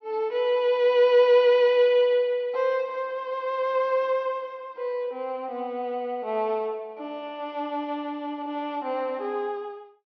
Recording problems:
treble cut off; nothing above 6 kHz

